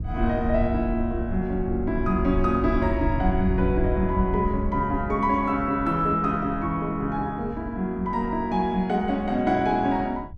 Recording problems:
wind on the microphone; below 90 Hz, SNR 8 dB

